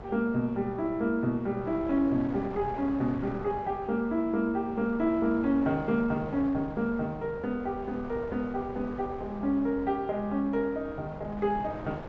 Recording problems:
treble cut off; nothing above 7.8 kHz
hum; 60 Hz, harmonics up to 660 Hz, SNR 26 dB
wind on the microphone; below 780 Hz, SNR 14 dB

